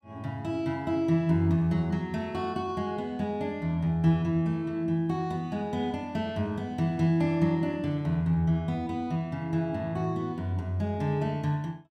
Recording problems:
none

